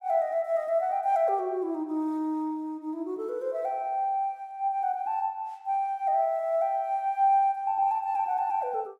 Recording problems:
none

